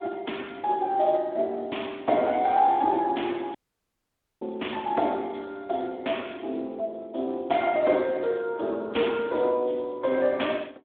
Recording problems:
phone line; 240 Hz to 3.5 kHz, Speex
audio cutting out; at 3.5 s for 1 s

